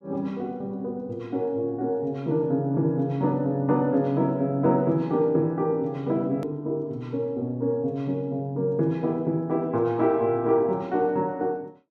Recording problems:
click at an edit; at 6.5 s

